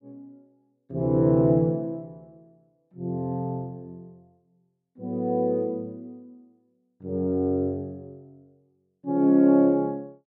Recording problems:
none

